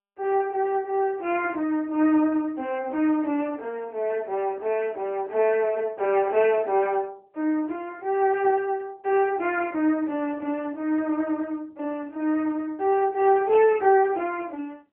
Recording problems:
telephone audio; 260 Hz to 3.9 kHz, AMR-NB

